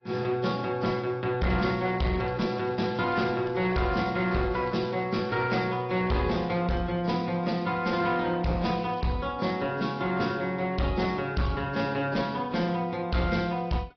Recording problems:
treble missing; nothing above 5.3 kHz
lossy compression; AAC, log-spectral distance 3 dB
distorted audio; hard clipping, uneven, signal-to-distortion ratio 11 dB
crackle; from 2 to 5 s and at 8.5 s; loose cable, SNR 26 dB

